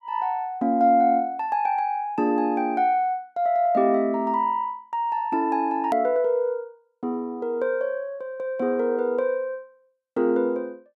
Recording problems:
hard cut with a click; at 6 s

